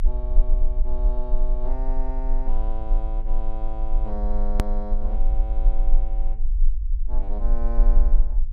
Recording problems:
low-frequency rumble; below 34 Hz, strongest tone 20 Hz, SNR -11 dB
click at an edit; at 4.5 s

